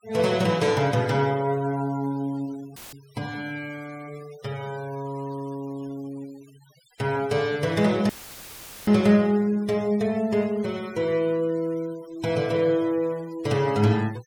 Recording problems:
denoising artefacts; signal-to-artefact ratio 23 dB
audio cutting out; at 3 s and at 8 s for 1 s; filled with static

